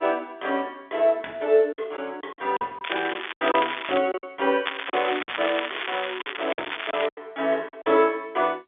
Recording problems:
phone line; 300 Hz to 3.9 kHz, G.711
lost packets; 8% of the sound replaced, filled with silence
crackling; from 3 to 4 s and from 4.5 to 7 s; loose cable, SNR 5 dB

